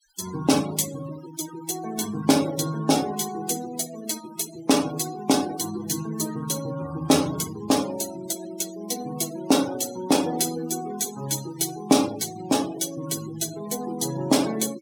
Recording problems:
noise reduction artefacts; signal-to-artefact ratio 15 dB

